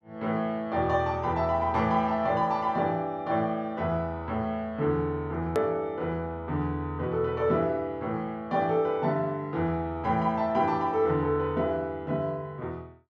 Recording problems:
edit click; at 5.5 s

